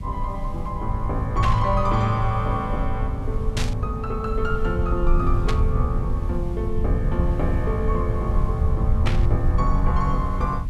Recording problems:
hiss; slope -3 dB per octave, SNR 26 dB
low-frequency rumble; below 86 Hz, SNR -1 dB
static burst; 4 times, first at 1.5 s; peak +2 dB vs average level

